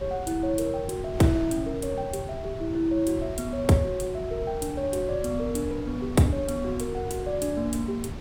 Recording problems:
wind on the microphone; below 260 Hz, SNR 10 dB

